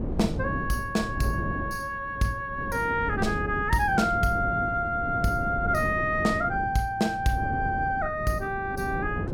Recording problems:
wind on the microphone; below 280 Hz, SNR 7 dB

